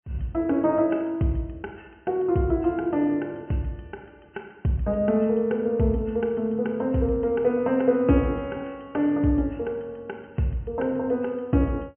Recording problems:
treble missing; nothing above 3.1 kHz

